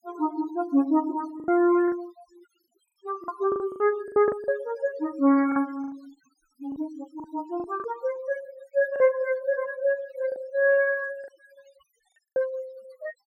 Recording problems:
noise reduction artefacts; signal-to-artefact ratio 22 dB
packet loss; 9% of the sound replaced, filled with the last packet

